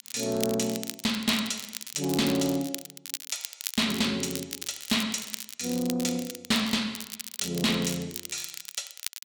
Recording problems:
distorted audio; soft clipping, signal-to-distortion ratio 10 dB
crackle; vinyl, SNR 8 dB

